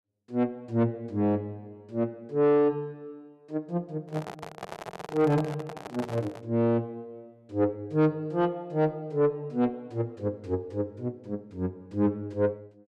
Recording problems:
distortion; soft clipping, signal-to-distortion ratio 11 dB
handling noise; from 4 to 6.5 s; peak -3 dB vs average level

